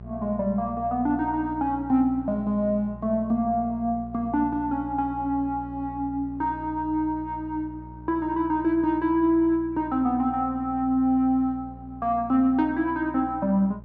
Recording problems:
electrical hum; 60 Hz, harmonics up to 780 Hz, SNR 17 dB

